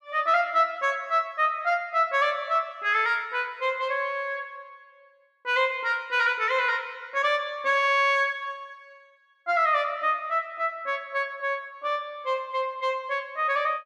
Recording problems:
none

